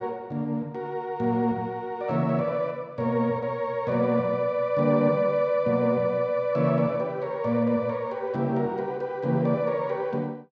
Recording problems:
none

